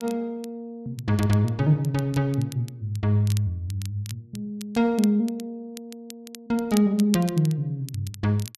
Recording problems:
crackling; vinyl, SNR 18 dB

